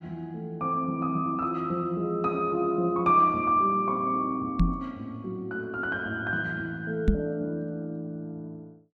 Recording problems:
microphone bump; at 4.5 s and at 7 s; peak +8 dB vs average level

